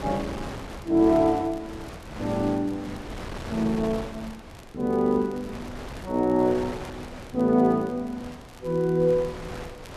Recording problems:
wind noise; below 1.1 kHz, SNR 14 dB
crackle; vinyl, SNR 30 dB

